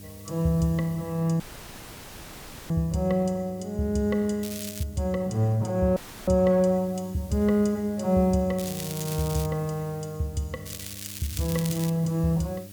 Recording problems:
hum; 50 Hz, harmonics up to 700 Hz, SNR 19 dB
hiss; slope +4 dB per octave, SNR 24 dB
audio cutting out; at 1.5 s for 1.5 s and at 6 s
crackle; at 4.5 s, at 8.5 s and from 11 to 12 s; loose cable, SNR 10 dB

